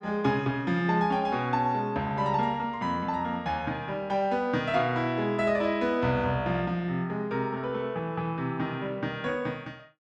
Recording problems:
none

